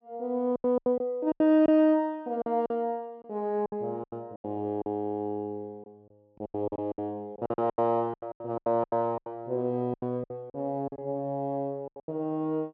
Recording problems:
treble missing; nothing above 8 kHz
lost packets; 15% of the sound replaced, filled with silence

